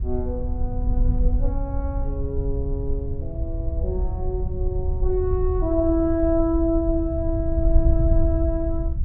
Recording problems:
wind noise; below 70 Hz, SNR 0 dB

